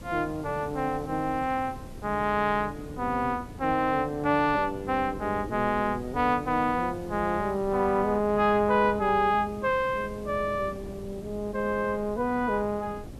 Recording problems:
background hiss; slope -3 dB per octave, SNR 26 dB
wind noise; below 310 Hz, SNR 16 dB

